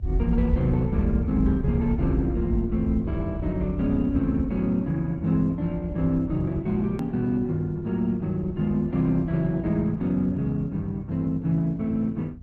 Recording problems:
lossy compression; Opus, log-spectral distance 2 dB, nothing above 13.1 kHz
hum; 50 Hz, harmonics up to 450 Hz, SNR 22 dB
rumble; below 80 Hz, SNR 8 dB
edit click; at 7 s

